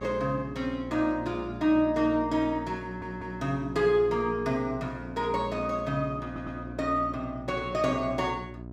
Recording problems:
hum; 60 Hz, harmonics up to 1 kHz, SNR 13 dB
audio stuttering; at 3 s and at 6.5 s

